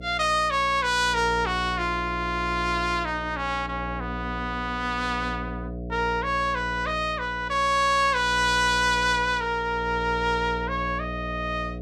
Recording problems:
electrical hum; 60 Hz, harmonics up to 720 Hz, SNR 11 dB

